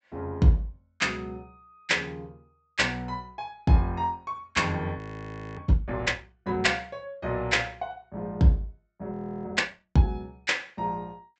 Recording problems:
low-pass filter; nothing above 8 kHz
audio freezing; at 5 s for 0.5 s and at 9 s

